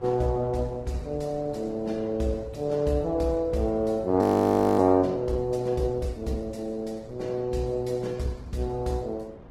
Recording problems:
lossy codec; Vorbis, then Opus, log-spectral distance 2 dB, nothing above 17.7 kHz
wind on the microphone; below 490 Hz, SNR 21 dB
frozen audio; at 4 s for 0.5 s

